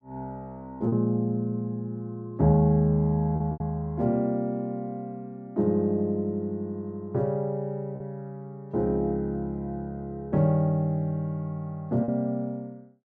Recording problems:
packet loss; 1.9% of the sound replaced, filled with repeated pitch periods

